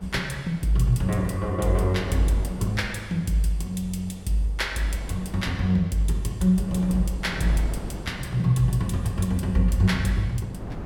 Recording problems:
wind noise; below 400 Hz, SNR 15 dB

